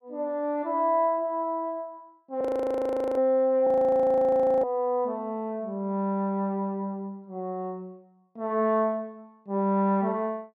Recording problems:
audio freezing; at 2.5 s for 1 s and at 3.5 s for 1 s

